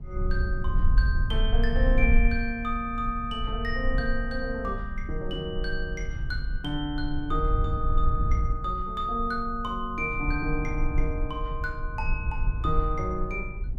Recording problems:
low-frequency rumble; below 56 Hz, SNR 0 dB

